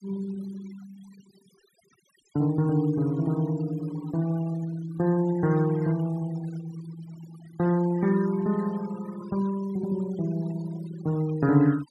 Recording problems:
noise reduction artefacts; signal-to-artefact ratio 20 dB

